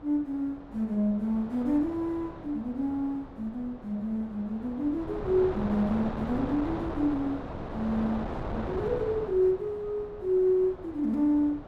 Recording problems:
wind on the microphone; below 770 Hz, SNR 10 dB

